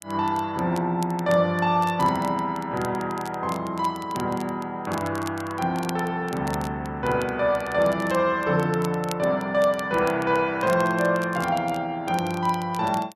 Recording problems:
crackle; vinyl, SNR 19 dB

